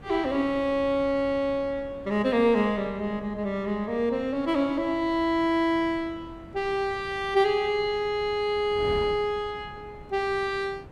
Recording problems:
wind noise; below 400 Hz, SNR 19 dB

